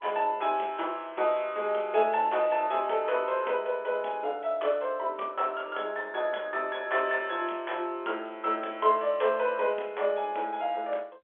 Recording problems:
phone line; 320 Hz to 3.6 kHz, G.711

